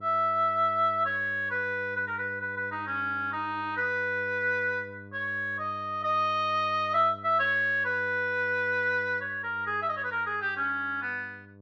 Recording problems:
hum; 50 Hz, harmonics up to 1 kHz, SNR 20 dB

